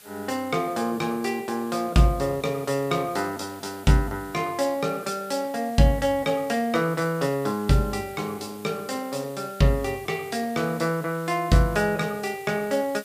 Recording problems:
hiss; slope 0 dB per octave, SNR 21 dB

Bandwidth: 15 kHz